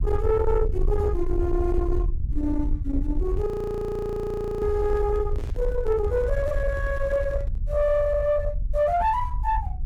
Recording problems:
distorted audio; soft clipping, signal-to-distortion ratio 10 dB
low-frequency rumble; below 74 Hz, SNR 4 dB
handling noise; from 3 to 7.5 s; peak -10 dB vs average level
frozen audio; at 3.5 s for 1 s

